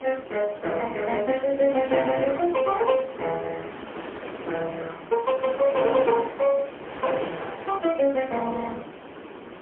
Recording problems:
telephone audio; 190 Hz to 3.6 kHz, AMR-NB, then MP3
wind noise; below 1.4 kHz, SNR 13 dB

